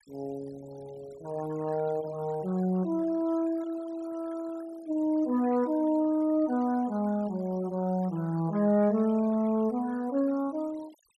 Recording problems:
noise reduction artefacts; signal-to-artefact ratio 23 dB

